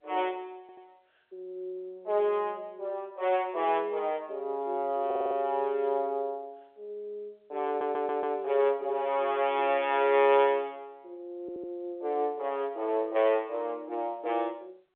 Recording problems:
phone line; 340 Hz to 3.6 kHz, G.711
stutter; 4 times, first at 0.5 s

